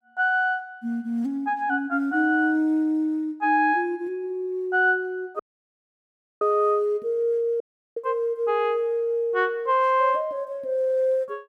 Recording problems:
dropout; at 5.5 s for 1 s and at 7.5 s

